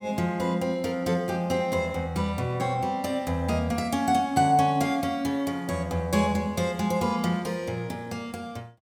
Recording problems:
none

